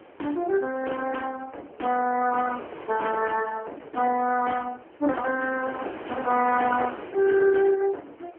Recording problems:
telephone audio; 260 Hz to 3.2 kHz, AMR-NB
wind noise; below 1 kHz, SNR 16 dB

